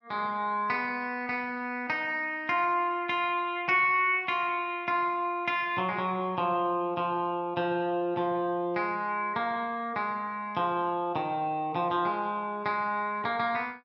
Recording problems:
none

